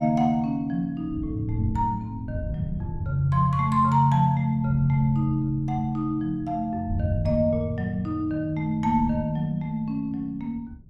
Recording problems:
wind on the microphone; below 120 Hz, SNR 12 dB

